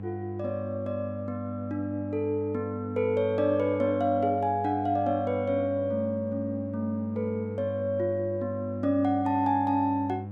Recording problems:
hum; 50 Hz, harmonics up to 800 Hz, SNR 10 dB

